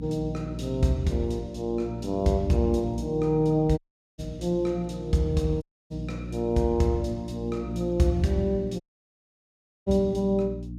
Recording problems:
hum; 60 Hz, harmonics up to 300 Hz, SNR 10 dB
dropout; at 4 s, at 5.5 s and at 9 s for 1 s

